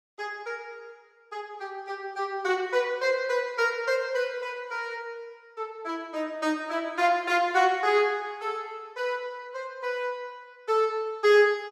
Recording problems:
none

